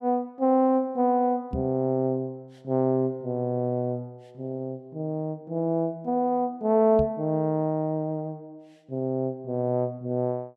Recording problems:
microphone thump; at 1.5 s and at 7 s; peak -1 dB vs average level

